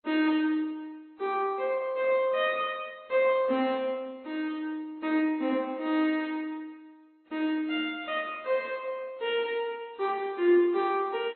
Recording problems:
codec artefacts; MP2, then AAC, log-spectral distance 2 dB, nothing above 3.8 kHz

